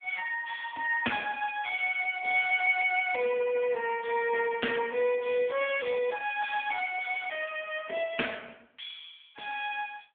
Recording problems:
telephone audio; 280 Hz to 3.3 kHz, AMR-NB

